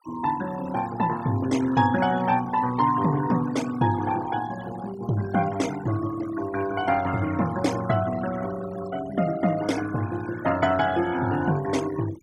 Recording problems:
denoising artefacts; signal-to-artefact ratio 15 dB

